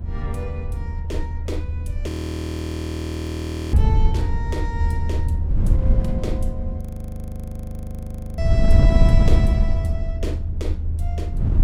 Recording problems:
rumble; below 80 Hz, SNR -5 dB
wind on the microphone; below 88 Hz, SNR -8 dB
frozen audio; at 2 s for 1.5 s and at 7 s for 1.5 s

